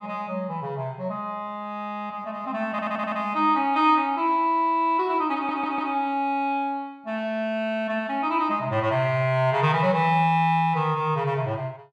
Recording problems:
audio stuttering; at 2.5 s and at 5.5 s

